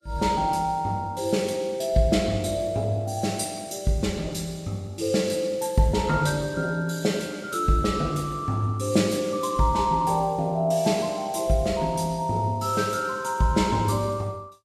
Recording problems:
lossy codec; Vorbis, log-spectral distance 3 dB, nothing above 12.7 kHz

